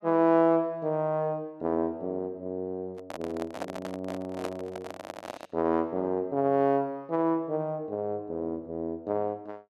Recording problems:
microphone handling noise; from 3 to 5.5 s; peak -2 dB vs average level

